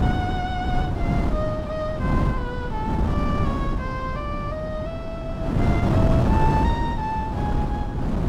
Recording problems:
wind on the microphone; below 260 Hz, SNR -5 dB

